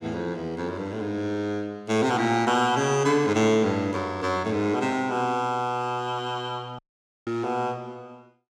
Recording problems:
dropout; at 7 s

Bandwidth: 16.5 kHz